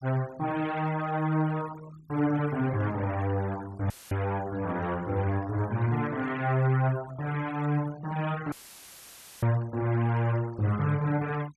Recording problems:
noise reduction artefacts; signal-to-artefact ratio 18 dB
audio cutting out; at 4 s and at 8.5 s for 1 s; filled with static

